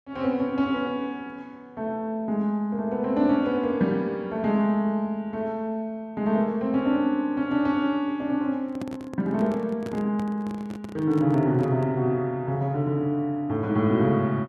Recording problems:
microphone handling noise; from 8.5 to 12 s; peak -6 dB vs average level

